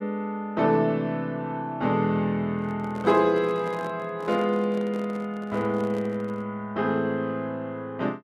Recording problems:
microphone handling noise; from 2.5 to 6.5 s; peak -8 dB vs average level

